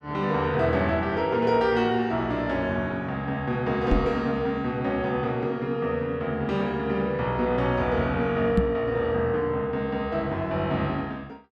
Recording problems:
microphone bump; at 4 s and at 8.5 s; peak +6 dB vs average level

